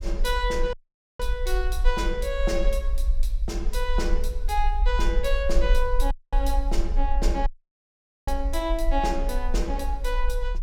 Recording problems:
rumble; below 44 Hz, strongest tone 22 Hz, SNR -1 dB
audio cutting out; at 0.5 s, at 6 s and at 7.5 s for 1 s

